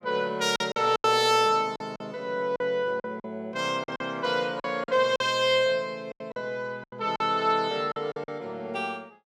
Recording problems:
packet loss; 10% of the sound replaced, filled with silence

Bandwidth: 16.5 kHz